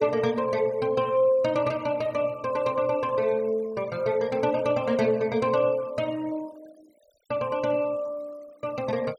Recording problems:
denoising artefacts; signal-to-artefact ratio 24 dB

